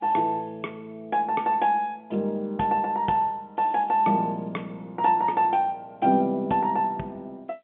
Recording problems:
phone line; 150 Hz to 3.4 kHz, G.711

